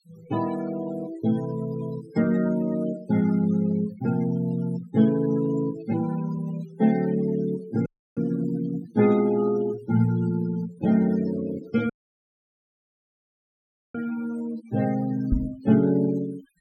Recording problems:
noise reduction artefacts; signal-to-artefact ratio 17 dB
audio cutting out; at 8 s and at 12 s for 2 s
microphone thump; at 15 s; peak +4 dB vs average level

